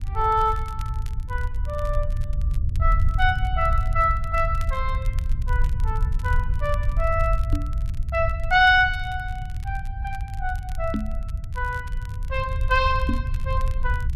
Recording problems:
low-frequency rumble; below 78 Hz, SNR 3 dB
crackle; vinyl, SNR 26 dB
knock on the microphone; at 7.5 s, at 11 s and at 13 s; peak +4 dB vs average level

